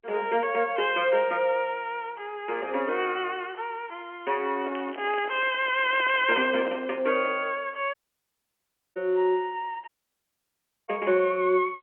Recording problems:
telephone audio; 220 Hz to 3.2 kHz, G.711
handling noise; from 4.5 to 7.5 s; peak -6 dB vs average level
crackling; from 5 to 6.5 s; loose cable, SNR 21 dB
audio cutting out; at 8 s for 1 s and at 10 s for 1 s

